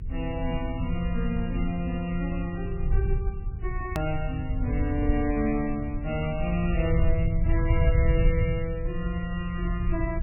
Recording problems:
lossy codec; MP3, log-spectral distance 2 dB, nothing above 2.4 kHz
hum; 50 Hz, harmonics up to 450 Hz, SNR 17 dB
low-frequency rumble; below 84 Hz, SNR 0 dB
click at an edit; at 4 s

